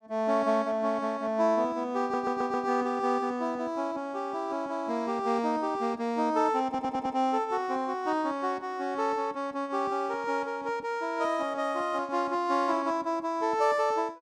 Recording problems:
audio stuttering; at 2 s and at 6.5 s

